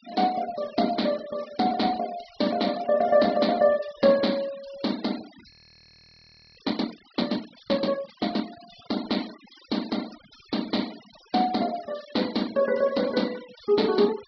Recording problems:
treble missing; nothing above 5.5 kHz
noise reduction artefacts; signal-to-artefact ratio 18 dB
audio freezing; at 5.5 s for 1 s

